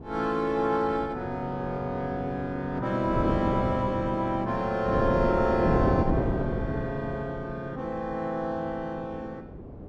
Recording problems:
wind noise; below 400 Hz, SNR 3 dB

